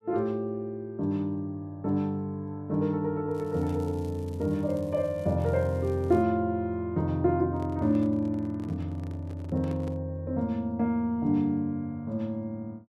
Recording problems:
crackling; from 3.5 to 6 s; loose cable, SNR 28 dB
microphone handling noise; from 7.5 to 10 s; peak -11 dB vs average level

